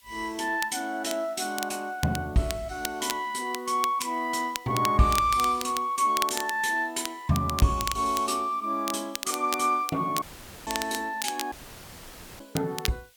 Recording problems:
hiss; SNR 29 dB
crackling; vinyl, SNR 9 dB
dropout; at 10 s and at 12 s for 1 s; filled with static

